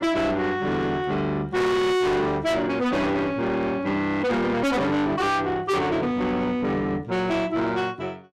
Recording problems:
distortion; soft clipping, signal-to-distortion ratio 6 dB

